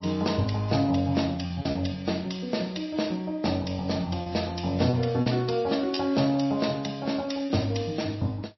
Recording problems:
lossy codec; MP3, log-spectral distance 5 dB, nothing above 5.7 kHz
lost packets; 3% of the sound replaced, filled with repeated pitch periods

